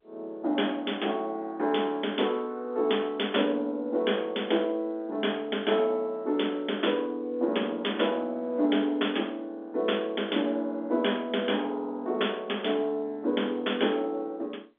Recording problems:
telephone audio; 220 Hz to 3.5 kHz, G.711

